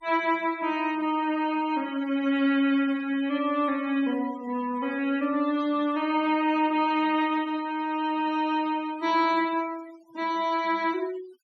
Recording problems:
noise reduction artefacts; signal-to-artefact ratio 20 dB

